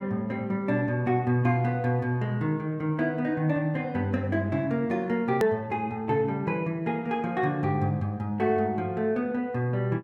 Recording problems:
hard cut with a click; at 5.5 s

